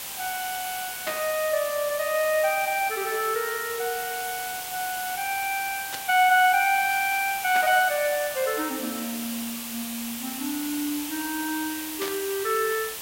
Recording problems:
background hiss; slope +1 dB per octave, SNR 7 dB
burst of static; 4 times, first at 1 s; peak -2 dB vs average level

